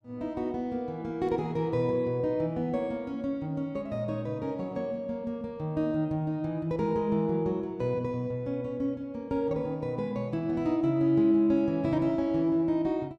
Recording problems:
none

